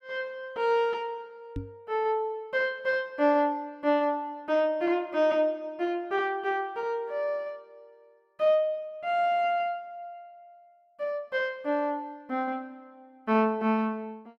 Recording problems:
microphone thump; at 1.5 s; peak -3 dB vs average level

